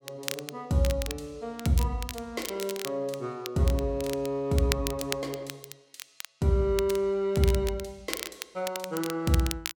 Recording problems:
crackling; vinyl, SNR 10 dB

